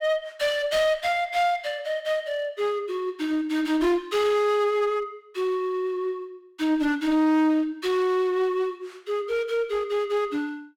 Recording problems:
distortion; hard clipping, uneven, signal-to-distortion ratio 10 dB

